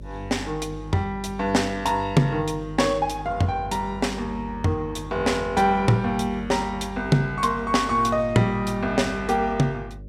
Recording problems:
hum; 50 Hz, harmonics up to 550 Hz, SNR 16 dB

